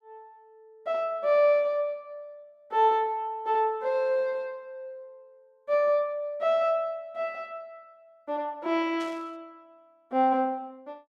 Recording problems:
static burst; at 9 s; peak -15 dB vs average level

